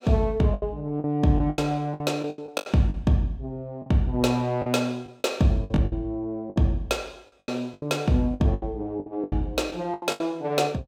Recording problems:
lost packets; 14% of the sound replaced, filled with the last packet

